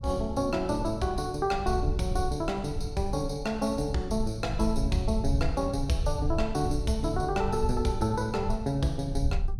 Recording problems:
low-frequency rumble; below 76 Hz, SNR 5 dB

